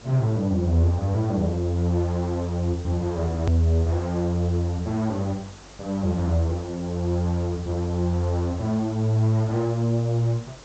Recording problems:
low-pass filter; nothing above 8 kHz
electrical hum; 50 Hz, harmonics up to 550 Hz, SNR 28 dB
background hiss; slope -3 dB per octave, SNR 21 dB
click at an edit; at 3.5 s

